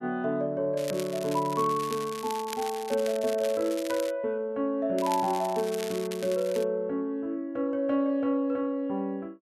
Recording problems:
crackling; from 1 to 4 s and from 5 to 6.5 s; loose cable, SNR 13 dB

